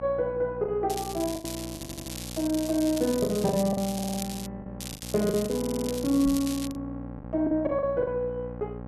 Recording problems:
hum; 60 Hz, harmonics up to 1.4 kHz, SNR 12 dB
packet loss; 8% of the sound replaced, filled with the last packet
crackle; from 1 to 4.5 s and from 5 to 6.5 s; loose cable, SNR 10 dB
audio stuttering; at 2 s, at 4 s and at 5.5 s
microphone thump; at 6.5 s; peak -3 dB vs average level

